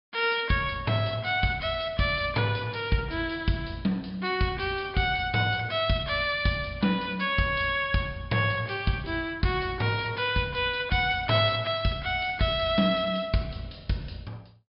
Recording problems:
low-pass filter; nothing above 5.5 kHz

